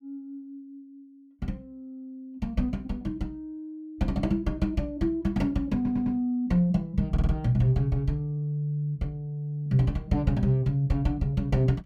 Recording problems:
stutter; at 6 s and at 7 s

